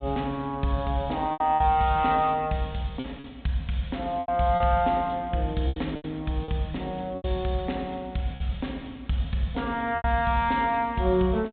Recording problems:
low-pass filter; nothing above 4 kHz
packet loss; 6% of the sound replaced, filled with repeated pitch periods

